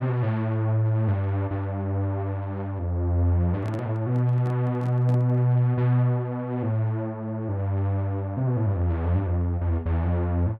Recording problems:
handling noise; from 3.5 to 5.5 s; peak -9 dB vs average level

